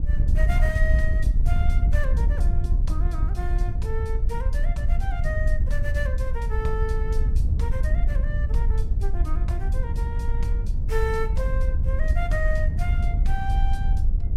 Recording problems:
wind on the microphone; below 68 Hz, SNR -8 dB

